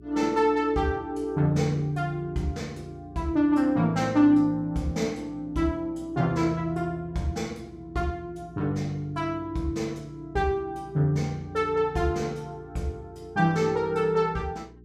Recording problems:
hum; 60 Hz, harmonics up to 420 Hz, SNR 23 dB

